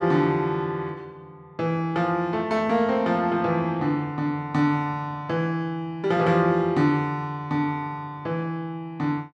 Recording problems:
none

